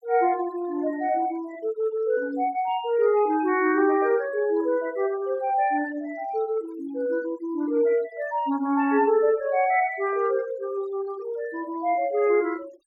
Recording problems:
noise reduction artefacts; signal-to-artefact ratio 22 dB

